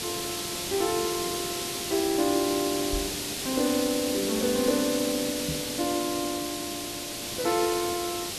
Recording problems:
hiss; SNR 2 dB
knock on the microphone; at 3 s and at 5.5 s; peak -2 dB vs average level

